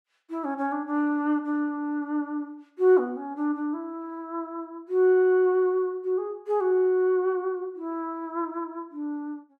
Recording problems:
none

